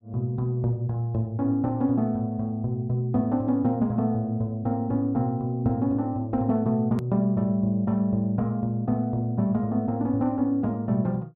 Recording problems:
hard cut with a click; at 7 s

